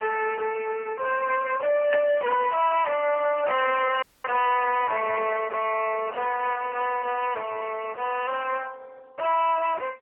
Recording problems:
telephone audio; 340 Hz to 2.8 kHz, AMR-NB
distorted audio; soft clipping, signal-to-distortion ratio 7 dB
static burst; at 2 s; peak -5 dB vs average level
dropout; at 4 s

